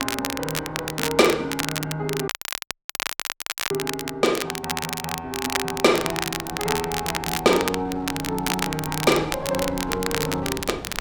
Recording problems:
wind on the microphone; below 480 Hz, SNR 17 dB
crackling; vinyl, SNR 4 dB
dropout; at 2.5 s for 1.5 s

